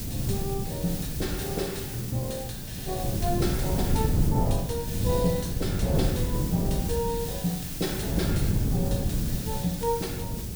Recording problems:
background hiss; slope +2 dB per octave, SNR 5 dB
wind noise; below 190 Hz, SNR -1 dB

